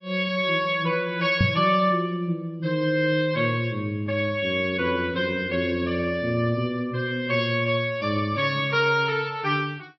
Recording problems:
lossy codec; MP3, log-spectral distance 2 dB, nothing above 4.8 kHz
microphone bump; at 1.5 s; peak +6 dB vs average level

